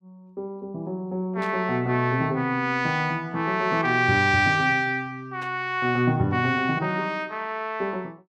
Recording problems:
static burst; at 1.5 s and at 5.5 s; peak -12 dB vs average level

